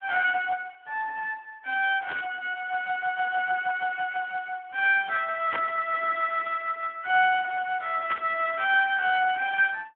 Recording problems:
telephone audio; 320 Hz to 2.9 kHz, Speex
burst of static; at 2 s, at 5.5 s and at 8 s; peak -1 dB vs average level

